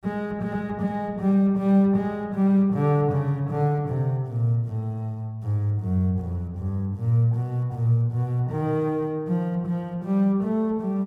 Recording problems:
none

